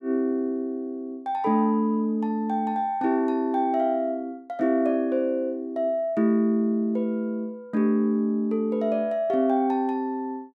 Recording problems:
none

